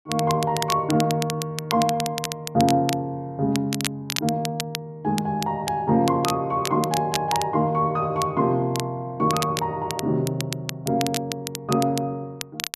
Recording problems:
crackle; vinyl, SNR 8 dB

